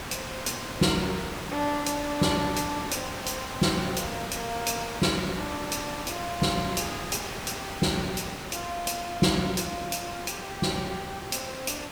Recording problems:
hiss; slope -3 dB per octave, SNR 7 dB

